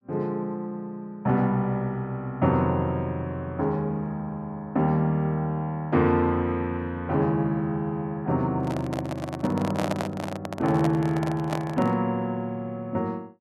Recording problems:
microphone handling noise; from 8.5 to 12 s; peak +2 dB vs average level

